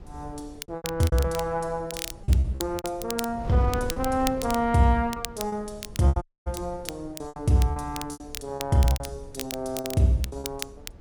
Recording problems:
wind on the microphone; below 200 Hz, SNR 16 dB
crackle; vinyl, SNR 12 dB
lost packets; 13% of the sound replaced, filled with repeated pitch periods
dropout; at 6 s

